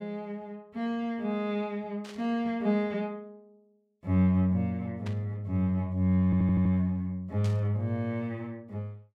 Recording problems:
static burst; at 2 s, at 5 s and at 7.5 s; peak -11 dB vs average level
stutter; at 6.5 s

